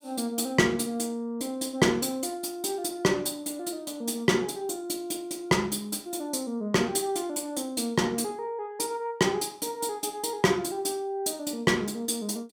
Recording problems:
none

